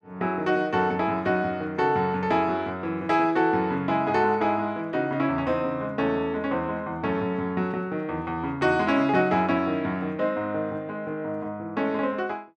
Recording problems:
none

